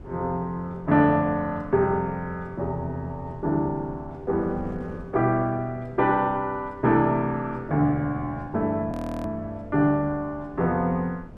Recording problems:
wind noise; below 280 Hz, SNR 19 dB
audio freezing; at 9 s

